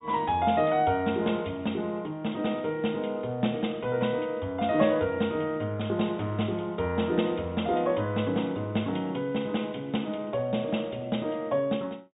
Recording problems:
low-pass filter; nothing above 4 kHz

